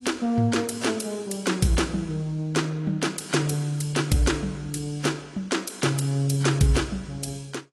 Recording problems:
lossy codec; AAC, log-spectral distance 4 dB, nothing above 11.6 kHz

